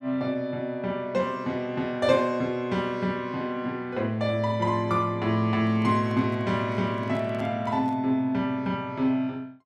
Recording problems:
microphone handling noise; from 5.5 to 8 s; peak -12 dB vs average level

